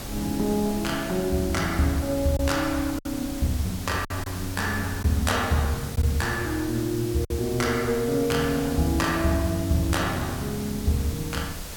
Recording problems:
hiss; slope -1 dB per octave, SNR 12 dB
wind noise; below 190 Hz, SNR 16 dB
lost packets; 2% of the sound replaced, filled with silence

